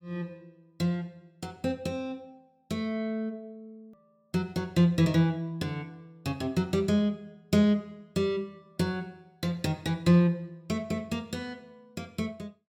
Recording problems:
click at an edit; at 4 s

